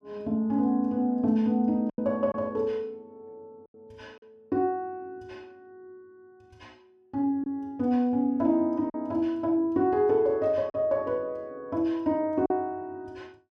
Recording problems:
lost packets; 2% of the sound replaced, filled with silence

